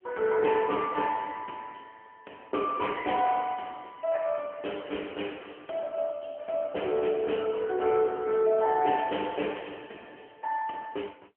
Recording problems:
phone line; 260 Hz to 3.2 kHz, AMR-NB

